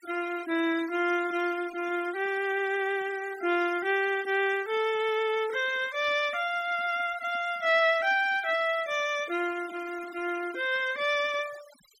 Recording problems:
noise reduction artefacts; signal-to-artefact ratio 18 dB

